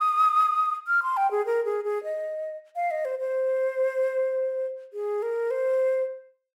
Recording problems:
none

